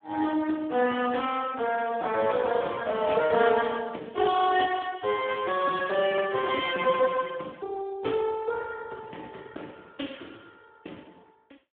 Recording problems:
phone line; 240 Hz to 3.3 kHz, Speex

